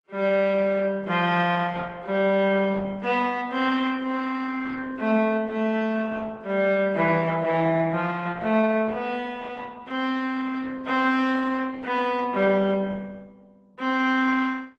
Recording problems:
codec artefacts; Opus, then AAC, log-spectral distance 3 dB

